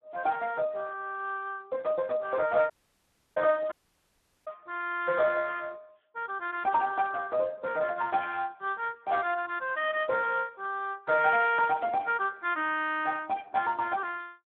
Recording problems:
phone line; 280 Hz to 3.5 kHz, Speex
dropout; at 2.5 s for 0.5 s and at 3.5 s for 0.5 s

